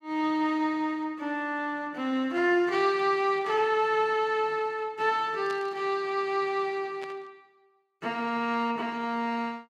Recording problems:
static burst; at 3.5 s, at 5.5 s and at 7 s; peak -12 dB vs average level

